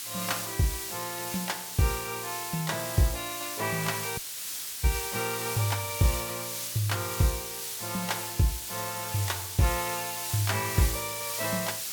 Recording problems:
hiss; slope +3 dB per octave, SNR 3 dB
dropout; at 4 s for 0.5 s

